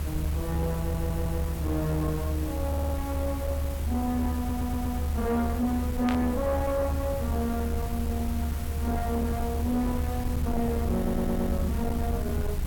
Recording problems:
distortion; soft clipping, signal-to-distortion ratio 12 dB
background hiss; slope -4 dB per octave, SNR 11 dB
rumble; below 80 Hz, strongest tone 74 Hz, SNR 1 dB
stutter; 4 times, first at 1 s
burst of static; at 6 s; peak -1 dB vs average level

